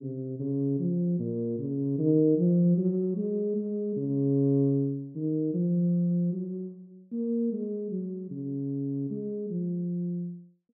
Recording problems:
none

